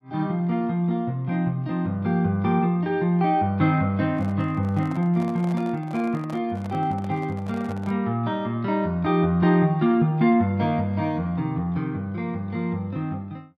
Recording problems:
handling noise; from 4 to 8 s; peak -12 dB vs average level

